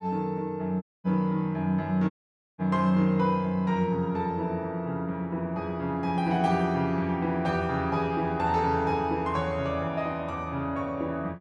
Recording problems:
audio cutting out; at 1 s and at 2 s

